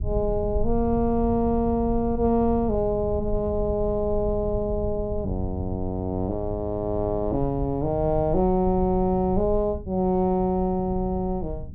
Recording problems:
rumble; below 96 Hz, SNR 10 dB

